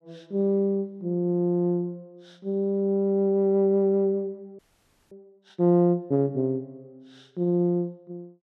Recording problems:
audio freezing; at 4.5 s for 0.5 s

